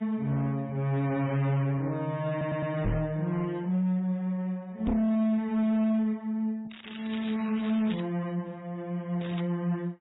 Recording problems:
lossy compression; MP3, then AAC, log-spectral distance 3 dB, nothing above 3.8 kHz
distorted audio; hard clipping, signal-to-distortion ratio 11 dB
audio stuttering; at 2.5 s
knock on the microphone; at 3 s and at 5 s; peak +3 dB vs average level
crackle; from 6.5 to 8 s and at 9 s; loose cable, SNR 17 dB

